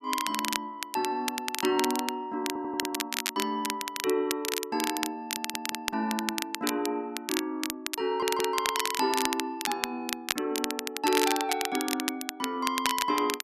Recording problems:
crackle; vinyl, SNR 2 dB
audio stuttering; at 2.5 s, at 5 s and at 8 s

